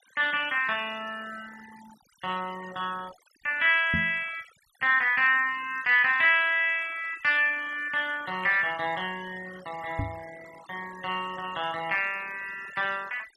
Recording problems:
noise reduction artefacts; signal-to-artefact ratio 22 dB
microphone thump; at 4 s and at 10 s; peak -1 dB vs average level

